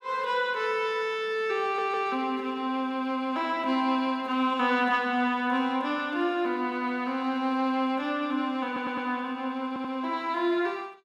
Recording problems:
audio stuttering; at 1.5 s, at 8.5 s and at 9.5 s

